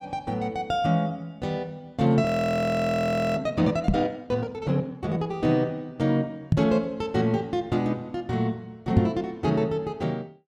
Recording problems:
audio freezing; at 2.5 s for 1 s
knock on the microphone; at 4 s, at 6.5 s and at 9 s; peak +10 dB vs average level

